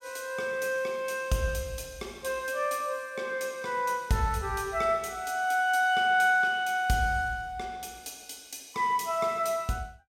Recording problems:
none

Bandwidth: 16 kHz